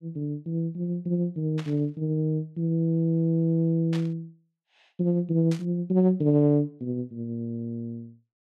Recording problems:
burst of static; at 1.5 s, at 4 s and at 5.5 s; peak -9 dB vs average level

